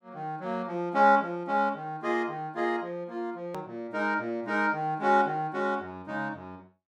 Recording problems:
hard cut with a click; at 3.5 s

